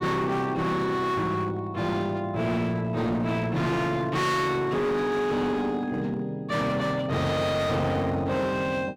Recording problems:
distortion; hard clipping, signal-to-distortion ratio 7 dB

